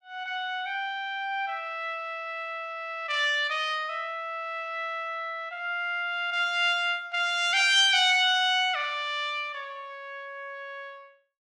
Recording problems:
none

